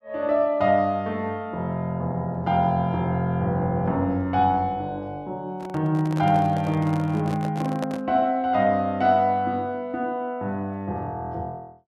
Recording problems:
handling noise; from 5.5 to 8 s; peak -3 dB vs average level

